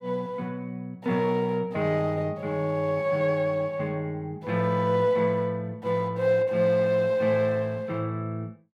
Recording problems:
none

